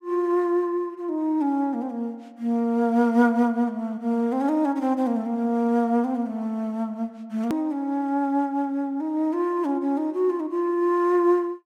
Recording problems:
hard cut with a click; at 7.5 s

